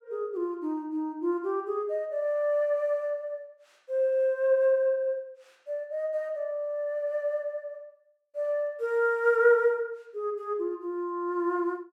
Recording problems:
none

